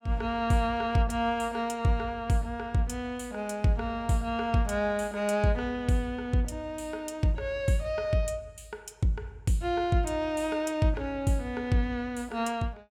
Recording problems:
none

